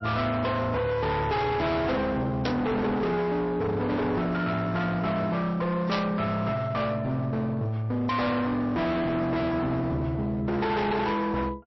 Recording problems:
codec artefacts; MP3, log-spectral distance 2 dB, nothing above 5.7 kHz
distorted audio; hard clipping, signal-to-distortion ratio 6 dB
burst of static; at 2.5 s and at 6 s; peak -1 dB vs average level

